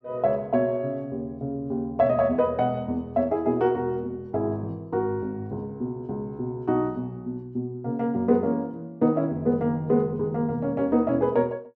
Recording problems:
none

